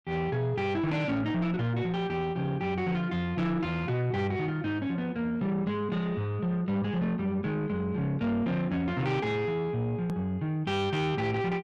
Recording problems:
distorted audio; soft clipping, signal-to-distortion ratio 11 dB
edit click; at 10 s

